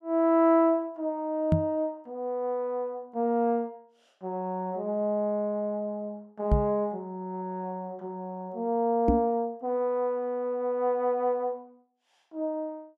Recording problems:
microphone thump; at 1.5 s, at 6.5 s and at 9 s; peak +9 dB vs average level

